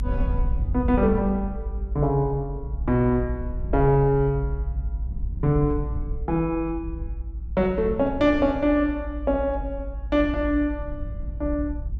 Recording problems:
rumble; below 62 Hz, SNR 7 dB

